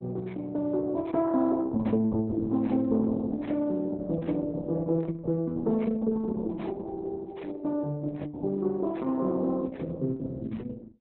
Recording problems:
lossy codec; Opus, log-spectral distance 2 dB, nothing above 4 kHz

